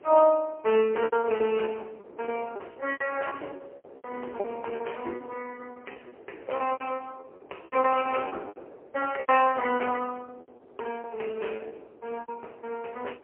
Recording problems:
telephone audio; 340 Hz to 3 kHz, AMR-NB, then MP3
wind on the microphone; below 600 Hz, SNR 19 dB
lost packets; 14% of the sound replaced, filled with repeated pitch periods

